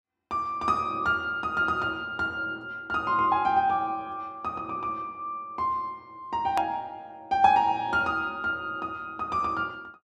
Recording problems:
click at an edit; at 6.5 s

